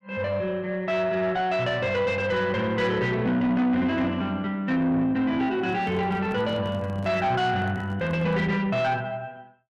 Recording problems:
distortion; soft clipping, signal-to-distortion ratio 10 dB
handling noise; from 5.5 to 8.5 s; peak -8 dB vs average level

